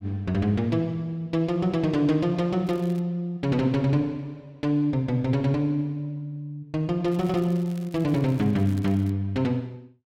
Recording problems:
crackle; at 2.5 s and from 7 to 9 s; loose cable, SNR 26 dB

